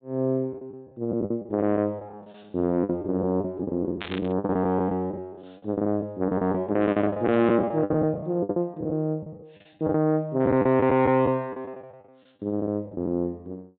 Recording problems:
treble missing; nothing above 4 kHz
distorted audio; soft clipping, signal-to-distortion ratio 11 dB
lost packets; 14% of the sound replaced, filled with the last packet
burst of static; at 4 s; peak -5 dB vs average level

